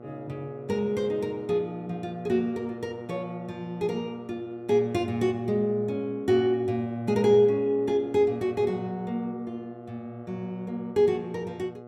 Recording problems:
hum; 60 Hz, harmonics up to 1.3 kHz, SNR 16 dB

